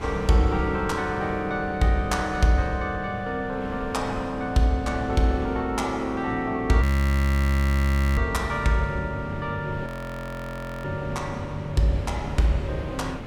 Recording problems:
wind on the microphone; below 460 Hz, SNR 13 dB
frozen audio; at 7 s for 1.5 s and at 10 s for 1 s

